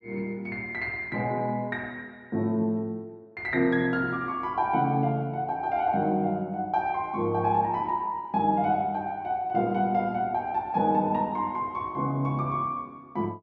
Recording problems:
none

